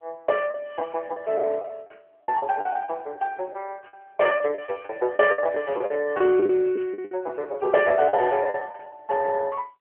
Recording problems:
phone line; 280 Hz to 3.6 kHz, AMR-NB
packet loss; 12% of the sound replaced, filled with the last packet

